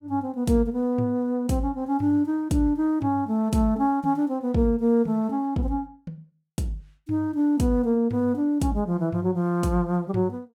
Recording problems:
none

